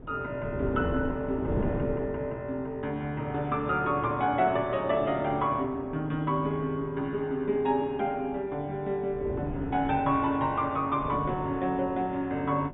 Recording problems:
treble missing; nothing above 3.7 kHz
wind on the microphone; below 390 Hz, SNR 10 dB

